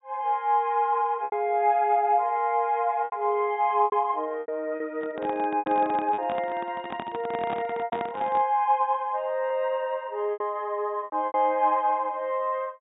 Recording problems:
treble missing; nothing above 4 kHz
lost packets; 7% of the sound replaced, filled with repeated pitch periods
handling noise; from 5 to 8.5 s; peak -5 dB vs average level

